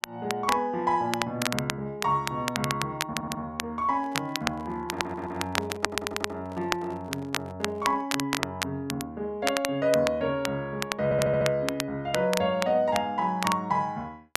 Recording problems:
crackling; vinyl, SNR 5 dB
stutter; 4 times, first at 3 s
handling noise; from 4 to 8 s; peak -8 dB vs average level

